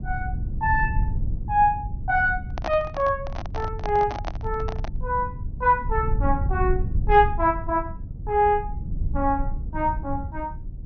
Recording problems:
low-pass filter; nothing above 6.4 kHz
rumble; below 90 Hz, SNR 6 dB
handling noise; from 2.5 to 5 s; peak -1 dB vs average level

